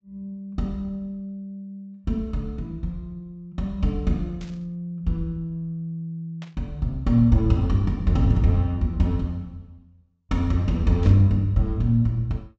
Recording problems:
treble cut off; nothing above 8 kHz
static burst; at 4.5 s, at 6.5 s and at 11 s; peak -16 dB vs average level

